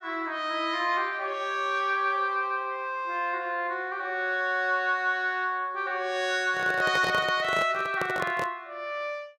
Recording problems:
microphone handling noise; from 6.5 to 8.5 s; peak -2 dB vs average level

